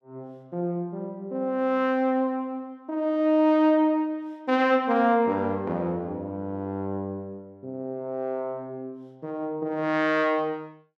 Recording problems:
none

